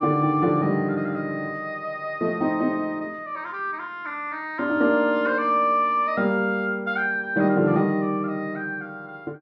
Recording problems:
none

